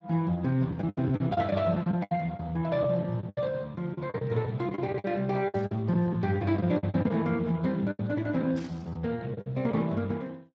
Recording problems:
codec artefacts; Speex, log-spectral distance 3 dB
lost packets; 12% of the sound replaced, filled with the last packet
burst of static; at 5.5 s and at 8.5 s; peak -15 dB vs average level

